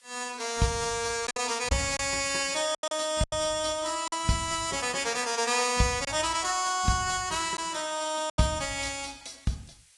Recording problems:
codec artefacts; AAC, log-spectral distance 8 dB, nothing above 10.1 kHz
background hiss; SNR 28 dB
packet loss; 5% of the sound replaced, filled with silence

